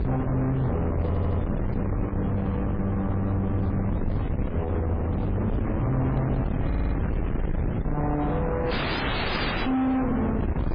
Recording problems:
codec artefacts; MP3, then MP3, log-spectral distance 3 dB, nothing above 11.3 kHz
distorted audio; soft clipping, signal-to-distortion ratio 8 dB
hum; 60 Hz, harmonics up to 660 Hz, SNR 24 dB
wind on the microphone; below 290 Hz, SNR 2 dB
stutter; at 1 s and at 6.5 s
dropout; at 8.5 s for 1 s

